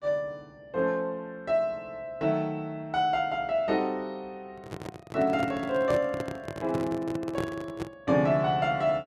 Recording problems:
handling noise; from 4.5 to 8 s; peak -1 dB vs average level

